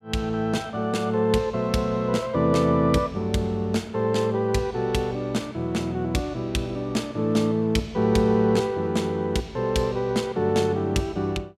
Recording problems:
none

